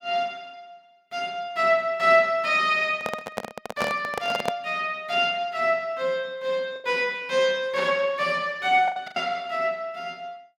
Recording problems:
lost packets; 2% of the sound replaced, filled with the last packet
handling noise; from 3 to 4.5 s; peak +1 dB vs average level

